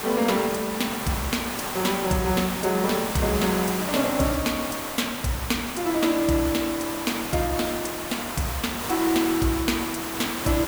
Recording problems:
background hiss; SNR 5 dB

